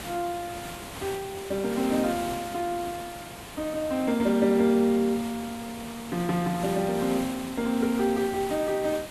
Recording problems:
background hiss; SNR 12 dB

